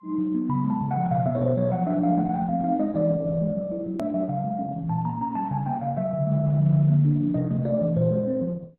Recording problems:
codec artefacts; Opus, then AAC, log-spectral distance 2 dB, nothing above 13.1 kHz
click at an edit; at 4 s

